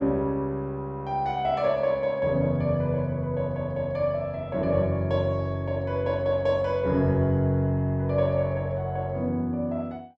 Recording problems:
none

